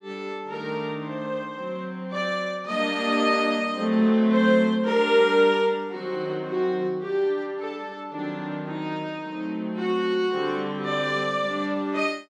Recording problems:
none

